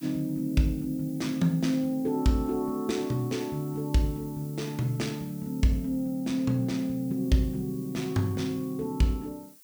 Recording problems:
background hiss; slope +2 dB per octave, SNR 21 dB

